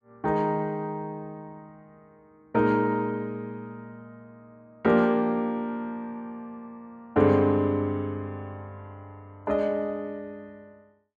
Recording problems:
none

